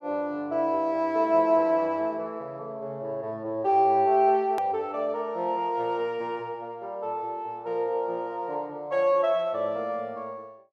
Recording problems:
hard cut with a click; at 4.5 s

